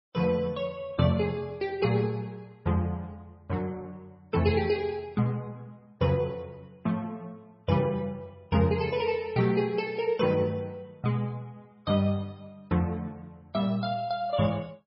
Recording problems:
codec artefacts; MP3, log-spectral distance 2 dB, nothing above 5.5 kHz

